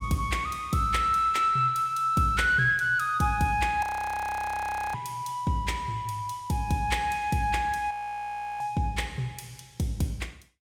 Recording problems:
frozen audio; at 4 s for 1 s and at 8 s for 0.5 s

